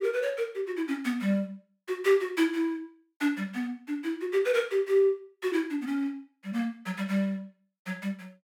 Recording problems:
none

